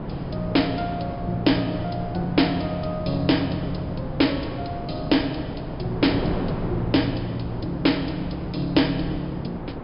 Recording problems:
treble cut off; nothing above 5.5 kHz
wind noise; below 500 Hz, SNR 7 dB

